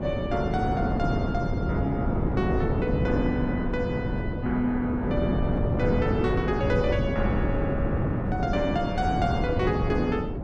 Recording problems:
wind noise; below 330 Hz, SNR -1 dB

